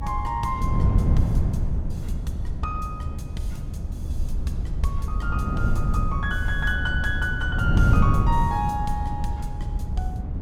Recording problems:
rumble; below 74 Hz, SNR 3 dB
wind noise; below 150 Hz, SNR -3 dB

